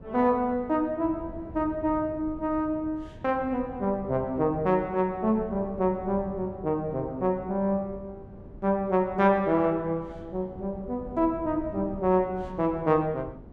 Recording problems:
wind noise; below 260 Hz, SNR 17 dB

